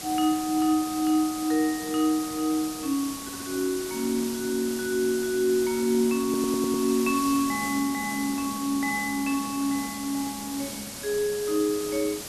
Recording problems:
hiss; SNR 9 dB
audio stuttering; at 3 s and at 6 s

